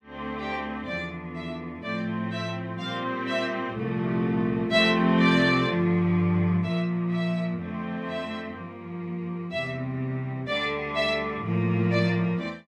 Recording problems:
none

